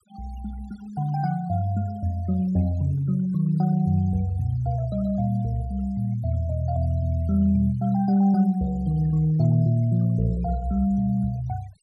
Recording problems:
noise reduction artefacts; signal-to-artefact ratio 25 dB

